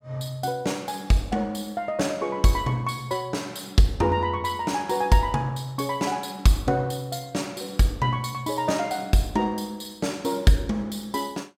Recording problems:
none

